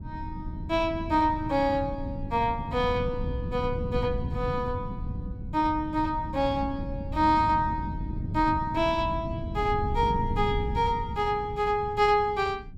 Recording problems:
wind on the microphone; below 170 Hz, SNR 7 dB

